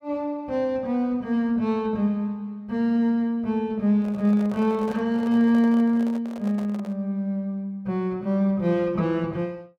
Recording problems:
handling noise; from 4 to 7 s; peak -11 dB vs average level

